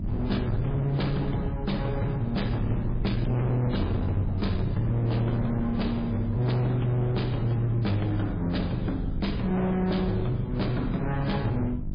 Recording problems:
lossy compression; MP3, log-spectral distance 2 dB, nothing above 11 kHz
distortion; hard clipping, signal-to-distortion ratio 7 dB
mains hum; 50 Hz, harmonics up to 700 Hz, SNR 11 dB
low-frequency rumble; below 120 Hz, SNR 8 dB

